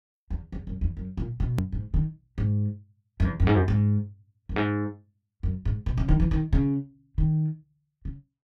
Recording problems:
edit click; at 1.5 s

